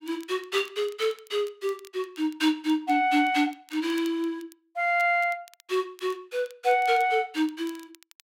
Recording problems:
crackling; vinyl, SNR 26 dB

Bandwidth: 16 kHz